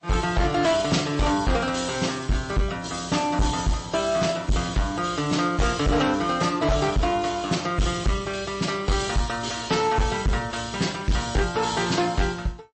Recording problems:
lossy compression; MP3, then AAC, log-spectral distance 6 dB, nothing above 8 kHz
distorted audio; hard clipping, signal-to-distortion ratio 8 dB

